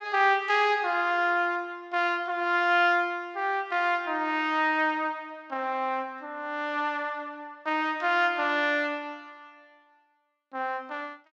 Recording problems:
none

